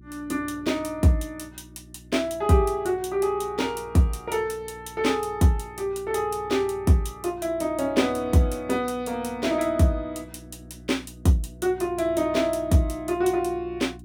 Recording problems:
hum; 60 Hz, harmonics up to 360 Hz, SNR 22 dB

